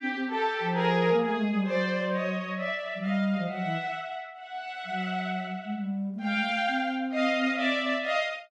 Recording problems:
none

